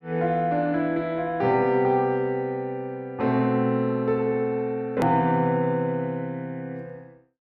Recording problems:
hard cut with a click; at 5 s

